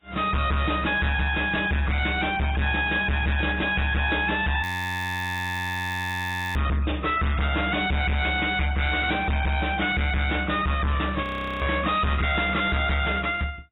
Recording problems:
lossy compression; AAC, log-spectral distance 7 dB
distortion; hard clipping, uneven, signal-to-distortion ratio 6 dB
audio freezing; at 4.5 s for 2 s and at 11 s

